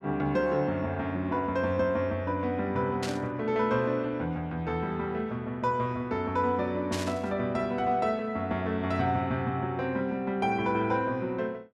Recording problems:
static burst; at 3 s and at 7 s; peak -2 dB vs average level

